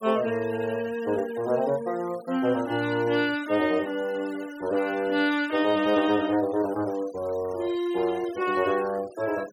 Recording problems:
noise reduction artefacts; signal-to-artefact ratio 20 dB

